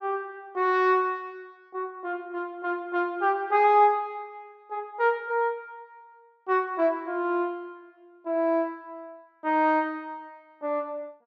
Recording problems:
none

